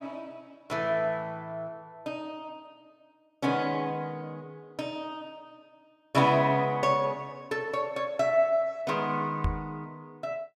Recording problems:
microphone thump; at 9.5 s; peak +3 dB vs average level

